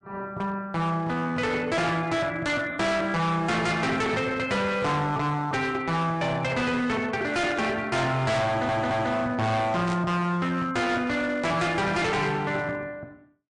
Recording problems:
codec artefacts; MP3, log-spectral distance 2 dB, nothing above 8.7 kHz
distortion; hard clipping, signal-to-distortion ratio 6 dB
static burst; 4 times, first at 2.5 s; peak -9 dB vs average level
audio stuttering; at 8.5 s

